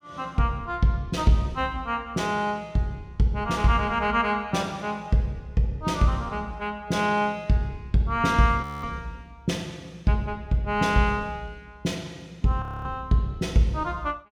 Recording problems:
frozen audio; at 8.5 s and at 13 s

